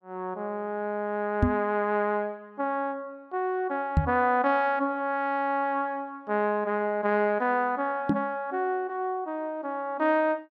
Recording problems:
knock on the microphone; at 1.5 s, at 4 s and at 8 s; peak +8 dB vs average level

